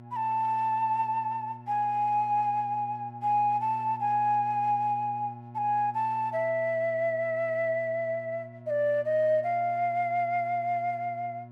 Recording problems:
hum; 60 Hz, harmonics up to 1.1 kHz, SNR 18 dB

